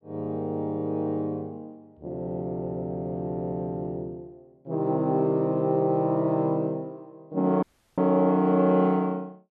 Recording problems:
dropout; at 7.5 s

